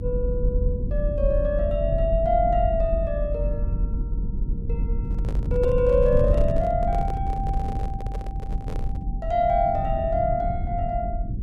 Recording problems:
rumble; below 92 Hz, SNR 3 dB
handling noise; from 5 to 9 s; peak -6 dB vs average level

